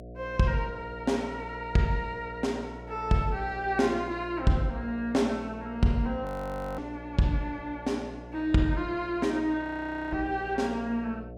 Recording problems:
electrical hum; 60 Hz, harmonics up to 720 Hz, SNR 14 dB
frozen audio; at 6.5 s for 0.5 s and at 9.5 s for 0.5 s

